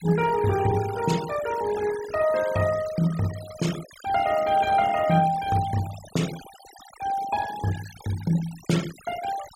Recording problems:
noise reduction artefacts; signal-to-artefact ratio 15 dB

